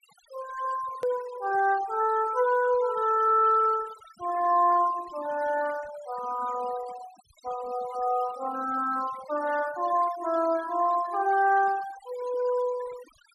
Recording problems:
noise reduction artefacts; signal-to-artefact ratio 18 dB
click at an edit; at 1 s

